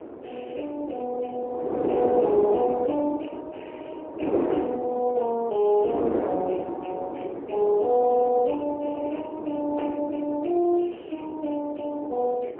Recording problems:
phone line; 260 Hz to 3 kHz, AMR-NB, then MP3
wind on the microphone; below 550 Hz, SNR 6 dB

